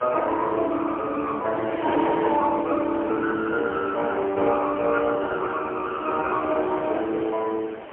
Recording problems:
phone line; 240 Hz to 3.4 kHz, AMR-NB, then MP3
wind noise; below 1.6 kHz, SNR 14 dB

